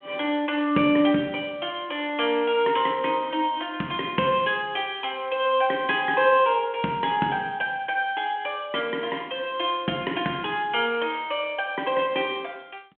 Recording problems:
phone line; 190 Hz to 3.5 kHz, G.726

